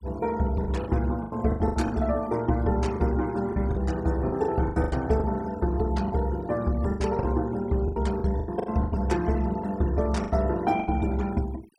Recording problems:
noise reduction artefacts; signal-to-artefact ratio 21 dB
packet loss; 12% of the sound replaced, filled with the last packet

